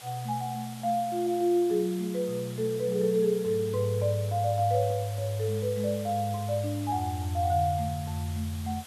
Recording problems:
background hiss; slope -1 dB per octave, SNR 16 dB

